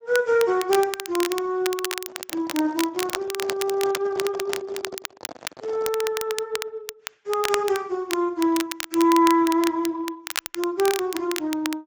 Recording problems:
codec artefacts; Speex, log-spectral distance 3 dB
crackling; vinyl, SNR 8 dB
microphone handling noise; from 2 to 6 s; peak -6 dB vs average level

